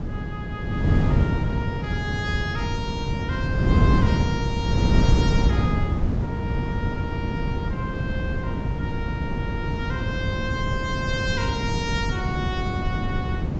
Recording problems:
treble cut off; nothing above 8 kHz
wind noise; below 210 Hz, SNR -6 dB

